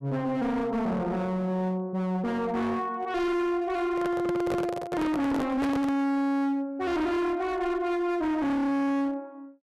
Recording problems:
distorted audio; hard clipping, signal-to-distortion ratio 6 dB
microphone handling noise; from 4 to 6 s; peak +1 dB vs average level

